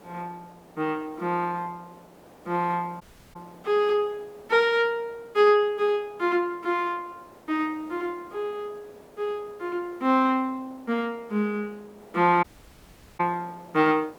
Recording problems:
background hiss; SNR 25 dB
audio cutting out; at 3 s and at 12 s for 1 s

